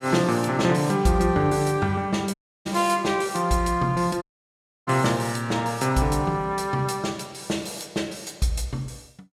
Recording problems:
dropout; at 2.5 s and at 4 s for 0.5 s

